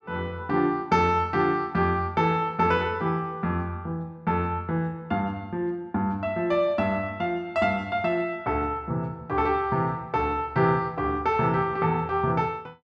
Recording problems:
none

